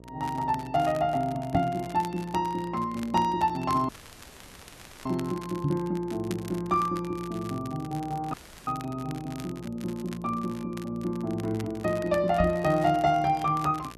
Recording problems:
electrical hum; 60 Hz, harmonics up to 720 Hz, SNR 20 dB
crackling; vinyl, SNR 20 dB
knock on the microphone; at 1.5 s, at 5.5 s and at 12 s; peak +4 dB vs average level
audio cutting out; at 4 s for 1 s and at 8.5 s

